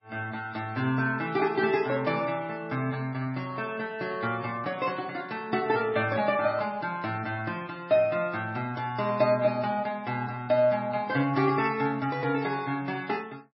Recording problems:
lossy compression; MP3, log-spectral distance 3 dB, nothing above 5 kHz

